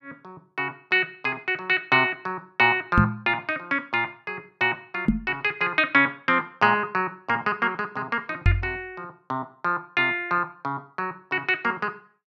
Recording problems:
knock on the microphone; at 3 s, at 5 s and at 8.5 s; peak +8 dB vs average level

